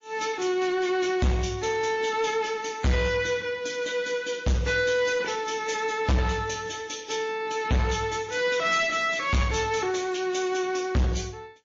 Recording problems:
codec artefacts; MP3, then MP3, log-spectral distance 4 dB, nothing above 6.3 kHz
distortion; soft clipping, signal-to-distortion ratio 6 dB

